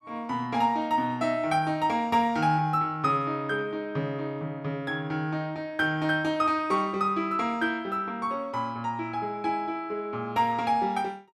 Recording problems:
none

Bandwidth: 15 kHz